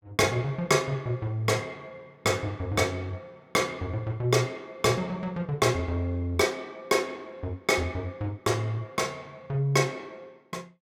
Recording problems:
none

